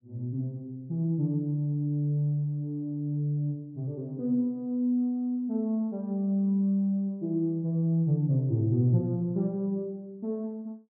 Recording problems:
none

